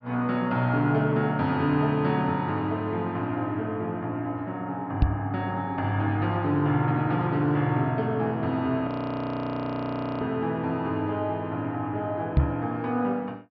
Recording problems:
treble missing; nothing above 5.5 kHz
microphone bump; at 5 s and at 12 s; peak +9 dB vs average level
frozen audio; at 9 s for 1.5 s

